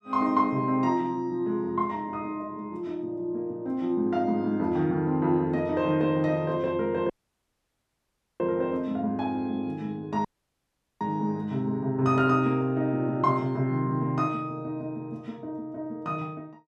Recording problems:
audio cutting out; at 7 s for 1.5 s and at 10 s for 1 s

